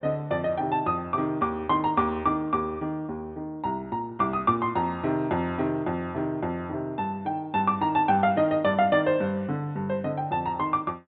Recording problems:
treble missing; nothing above 4 kHz

